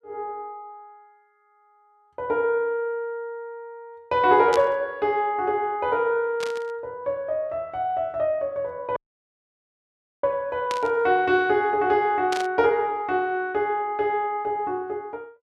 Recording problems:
burst of static; 4 times, first at 4.5 s; peak -3 dB vs average level
dropout; at 9 s for 1.5 s

